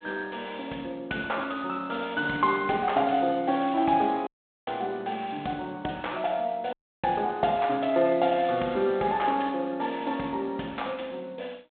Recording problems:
phone line; 240 Hz to 3.8 kHz, G.726
dropout; at 4.5 s and at 6.5 s

